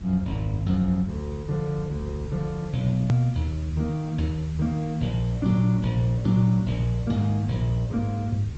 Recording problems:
treble missing; nothing above 8 kHz
lossy compression; Opus, log-spectral distance 2 dB
background hiss; slope 0 dB per octave, SNR 26 dB
rumble; below 130 Hz, SNR 16 dB
click at an edit; at 3 s

